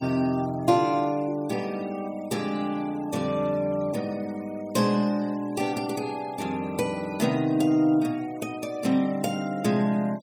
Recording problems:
noise reduction artefacts; signal-to-artefact ratio 23 dB

